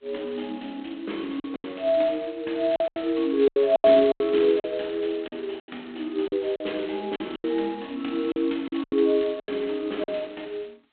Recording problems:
telephone audio; 280 Hz to 3.9 kHz, G.726
lost packets; 10% of the sound replaced, filled with silence

